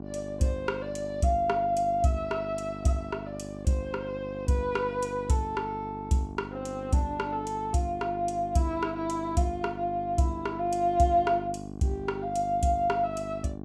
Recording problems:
hum; 50 Hz, harmonics up to 1.1 kHz, SNR 11 dB

